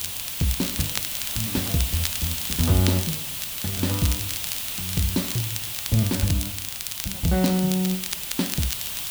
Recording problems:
hiss; SNR 2 dB
crackling; vinyl, SNR 6 dB

